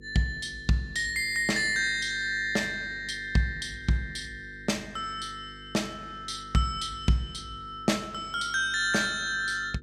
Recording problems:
mains hum; 50 Hz, harmonics up to 500 Hz, SNR 21 dB

